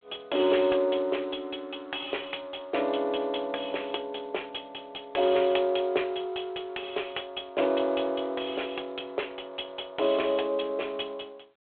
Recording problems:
phone line; 320 Hz to 3.4 kHz, G.726

